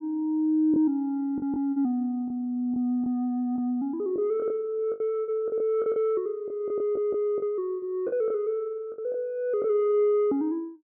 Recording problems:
packet loss; 7% of the sound replaced, filled with the last packet
audio stuttering; at 7 s

